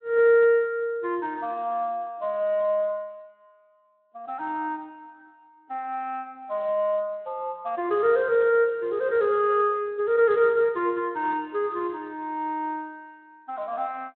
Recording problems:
phone line; 370 Hz to 3.7 kHz, Speex

